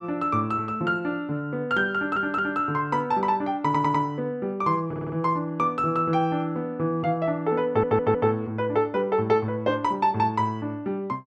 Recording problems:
audio stuttering; 4 times, first at 2 s

